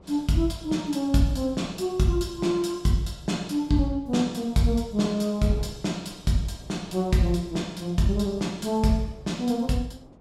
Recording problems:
wind noise; below 440 Hz, SNR 24 dB

